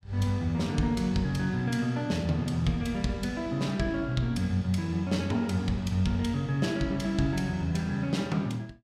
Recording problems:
none

